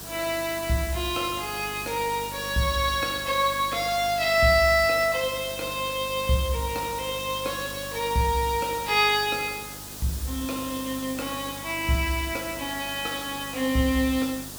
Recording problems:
hum; 50 Hz, harmonics up to 700 Hz, SNR 19 dB
hiss; SNR 11 dB

